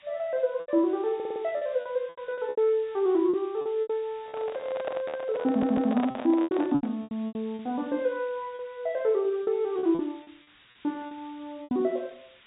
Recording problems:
treble missing; nothing above 4 kHz
hiss; SNR 27 dB
lost packets; 12% of the sound replaced, filled with repeated pitch periods
audio stuttering; at 1 s and at 5.5 s
handling noise; from 4 to 7 s; peak -1 dB vs average level

